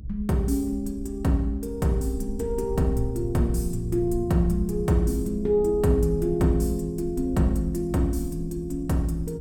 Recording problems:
low-frequency rumble; below 70 Hz, SNR 12 dB

